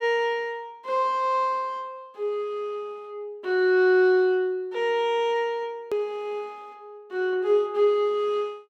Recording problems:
click at an edit; at 6 s

